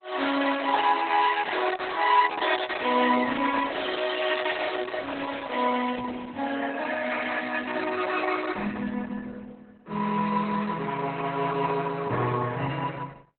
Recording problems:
lossy codec; Opus, log-spectral distance 6 dB, nothing above 4 kHz
crackling; from 1 to 2.5 s; loose cable, SNR 23 dB

